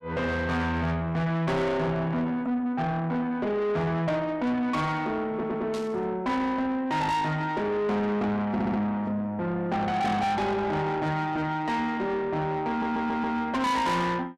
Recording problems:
distortion; soft clipping, signal-to-distortion ratio 8 dB
stutter; at 5.5 s, at 8.5 s and at 13 s
static burst; at 5.5 s; peak -10 dB vs average level

